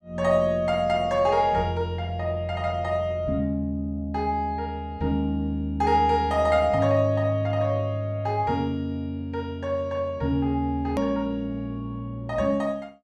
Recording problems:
click at an edit; at 11 s

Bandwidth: 12.5 kHz